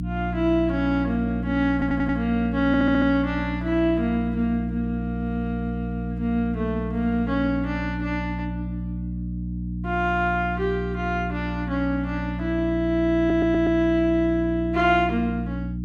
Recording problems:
mains hum; 60 Hz, harmonics up to 300 Hz, SNR 6 dB
stutter; at 1.5 s, at 2.5 s and at 13 s

